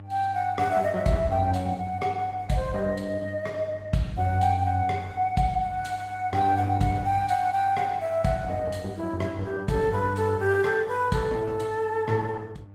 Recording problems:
codec artefacts; Opus, log-spectral distance 2 dB
mains hum; 50 Hz, harmonics up to 900 Hz, SNR 18 dB

